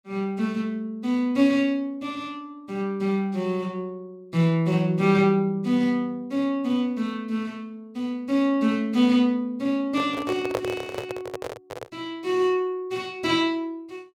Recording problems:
microphone handling noise; from 10 to 12 s; peak +2 dB vs average level

